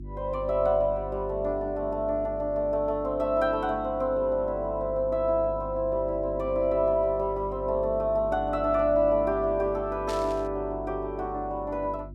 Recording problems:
hum; 50 Hz, harmonics up to 350 Hz, SNR 14 dB
static burst; at 10 s; peak -8 dB vs average level

